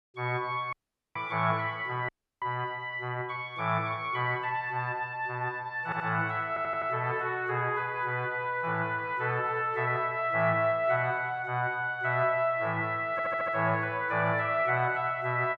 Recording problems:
audio cutting out; at 0.5 s and at 2 s
stutter; at 6 s, at 6.5 s and at 13 s

